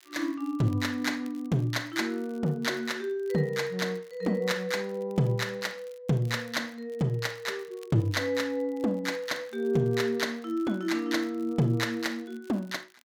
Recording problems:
crackle; vinyl, SNR 29 dB

